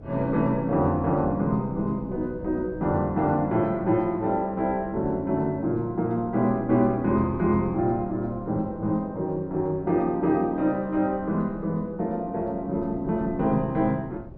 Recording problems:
wind on the microphone; below 270 Hz, SNR 18 dB

